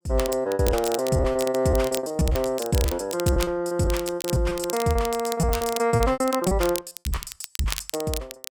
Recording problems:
crackle; vinyl, SNR 10 dB
lost packets; 21% of the sound replaced, filled with repeated pitch periods

